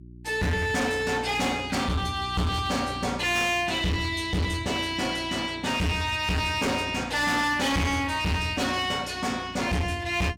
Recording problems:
distorted audio; hard clipping, signal-to-distortion ratio 8 dB
electrical hum; 60 Hz, harmonics up to 360 Hz, SNR 18 dB

